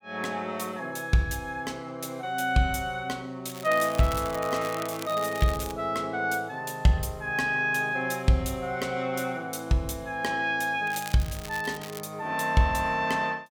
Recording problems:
crackle; from 3.5 to 5.5 s and from 11 to 12 s; loose cable, SNR 14 dB

